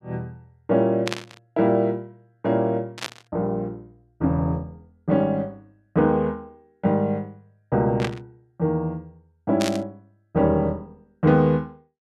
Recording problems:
static burst; 4 times, first at 1 s; peak 0 dB vs average level

